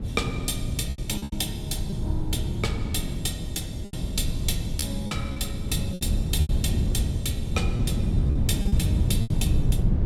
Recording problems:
wind noise; below 130 Hz, SNR -3 dB
lost packets; 8% of the sound replaced, filled with repeated pitch periods

